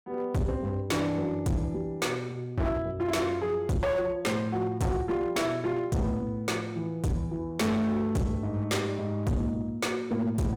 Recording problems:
distorted audio; hard clipping, signal-to-distortion ratio 7 dB

